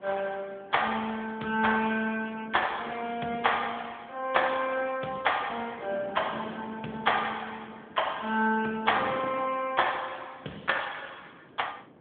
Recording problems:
phone line; 240 Hz to 3.5 kHz, AMR-NB
wind noise; below 630 Hz, SNR 18 dB

